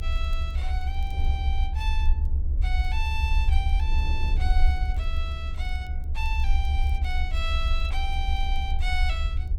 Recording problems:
hum; 50 Hz, harmonics up to 450 Hz, SNR 15 dB
rumble; below 70 Hz, strongest tone 22 Hz, SNR -7 dB
wind noise; below 180 Hz, SNR 10 dB
crackle; vinyl, SNR 29 dB

